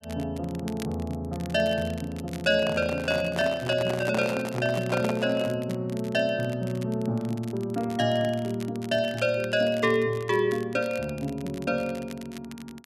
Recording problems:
crackle; vinyl, SNR 21 dB
handling noise; from 2.5 to 5.5 s; peak 0 dB vs average level

